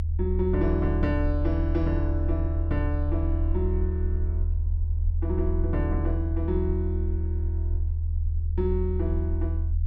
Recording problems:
rumble; below 80 Hz, strongest tone 80 Hz, SNR -3 dB

